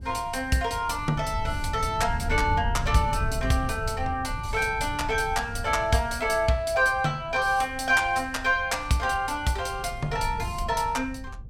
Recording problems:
wind on the microphone; below 110 Hz, SNR 10 dB

